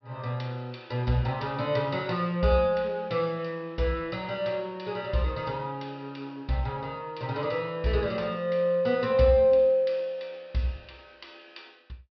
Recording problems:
treble missing; nothing above 5.5 kHz

